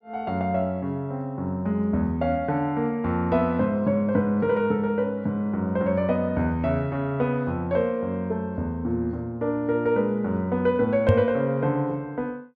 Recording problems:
microphone thump; at 11 s; peak +8 dB vs average level

